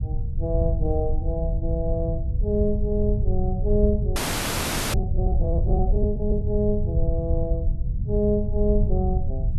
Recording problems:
low-frequency rumble; below 88 Hz, SNR -1 dB
audio freezing; at 4 s for 1 s

